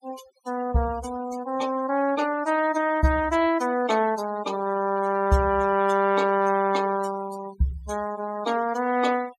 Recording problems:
denoising artefacts; signal-to-artefact ratio 18 dB

